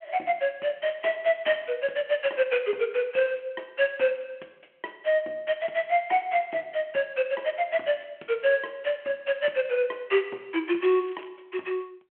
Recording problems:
phone line; 260 Hz to 3.3 kHz, G.726
crackle; at 11 s; loose cable, SNR 26 dB

